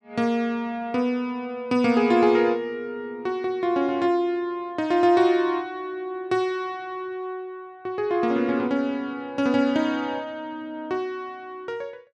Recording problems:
none

